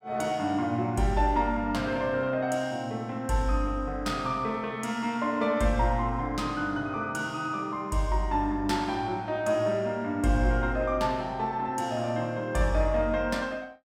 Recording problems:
none

